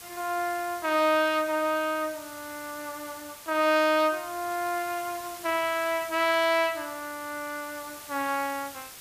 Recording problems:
background hiss; slope 0 dB per octave, SNR 15 dB

